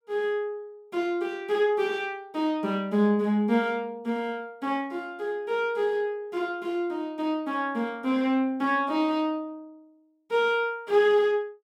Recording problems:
none

